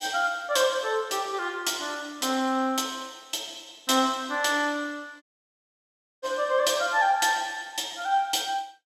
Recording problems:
dropout; at 5 s for 1 s

